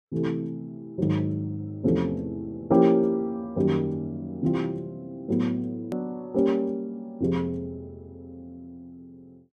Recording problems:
hard cut with a click; at 6 s

